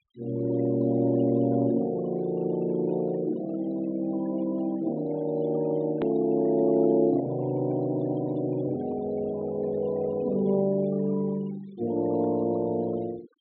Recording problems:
treble cut off; nothing above 4 kHz
noise reduction artefacts; signal-to-artefact ratio 23 dB
hard cut with a click; at 6 s

